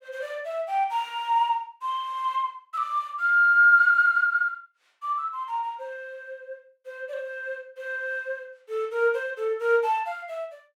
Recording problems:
none

